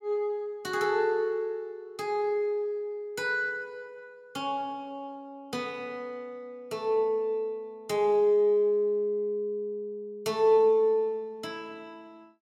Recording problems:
none

